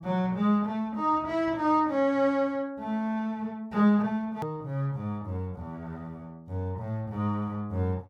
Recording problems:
edit click; at 4.5 s

